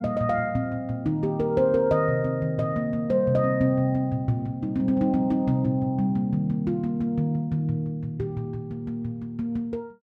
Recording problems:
none

